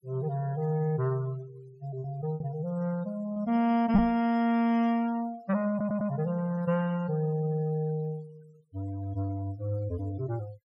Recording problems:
denoising artefacts; signal-to-artefact ratio 25 dB
lost packets; 1.6% of the sound replaced, filled with repeated pitch periods
knock on the microphone; at 4 s; peak +6 dB vs average level
stutter; at 5.5 s

